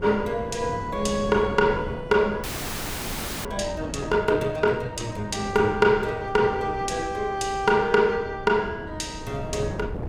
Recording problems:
wind noise; below 420 Hz, SNR 12 dB
audio freezing; at 2.5 s for 1 s

